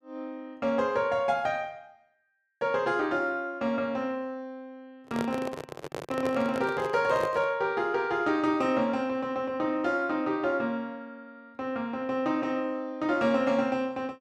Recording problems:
handling noise; from 5 to 7.5 s; peak -1 dB vs average level

